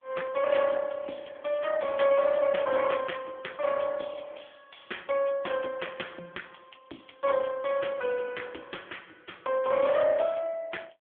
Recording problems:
telephone audio; 240 Hz to 3.4 kHz, AMR-NB

